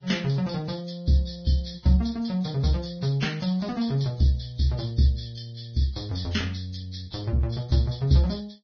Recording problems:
codec artefacts; Vorbis, log-spectral distance 5 dB, nothing above 5.7 kHz

